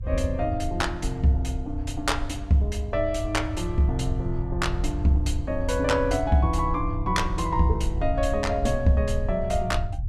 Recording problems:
low-frequency rumble; below 80 Hz, SNR 7 dB

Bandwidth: 14.5 kHz